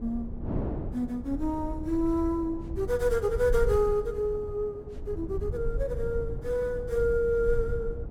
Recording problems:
low-frequency rumble; below 72 Hz, SNR 9 dB
wind on the microphone; below 370 Hz, SNR 13 dB

